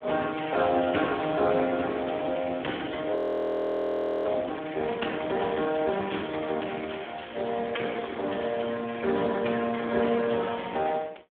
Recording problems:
phone line; 220 Hz to 3.5 kHz, Speex
frozen audio; at 3 s for 1 s

